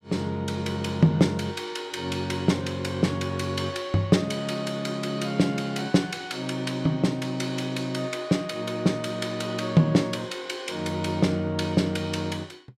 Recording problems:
none

